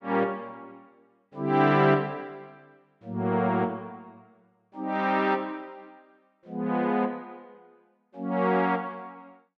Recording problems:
none

